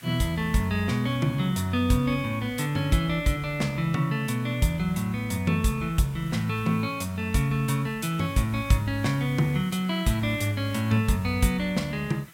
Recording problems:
background hiss; SNR 23 dB

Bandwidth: 16.5 kHz